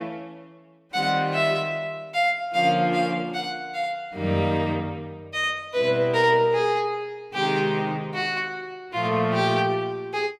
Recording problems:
none

